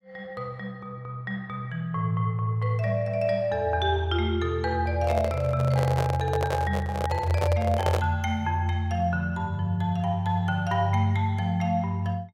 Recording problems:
handling noise; from 5 to 8 s; peak +3 dB vs average level

